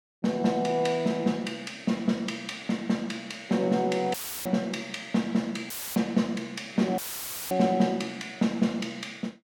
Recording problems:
dropout; at 4 s, at 5.5 s and at 7 s for 0.5 s; filled with static

